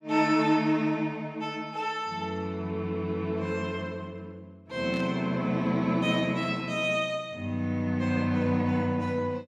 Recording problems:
burst of static; at 5 s; peak -13 dB vs average level

